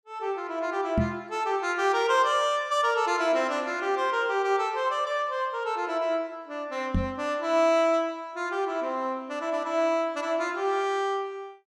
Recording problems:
knock on the microphone; at 1 s and at 7 s; peak +4 dB vs average level

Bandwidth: 14.5 kHz